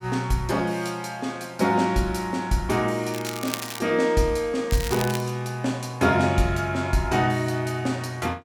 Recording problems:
crackling; at 3 s and at 4.5 s; loose cable, SNR 10 dB

